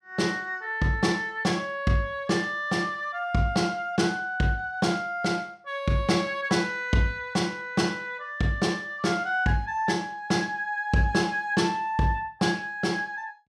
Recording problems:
none

